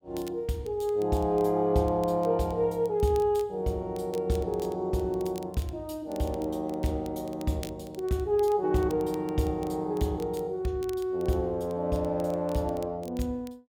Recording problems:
crackling; vinyl, SNR 24 dB

